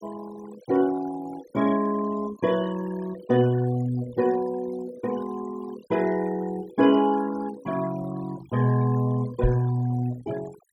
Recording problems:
denoising artefacts; signal-to-artefact ratio 18 dB
microphone thump; at 9.5 s; peak +4 dB vs average level

